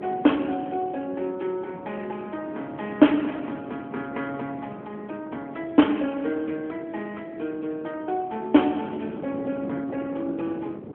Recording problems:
phone line; 220 Hz to 3.3 kHz, AMR-NB
wind noise; below 450 Hz, SNR 13 dB

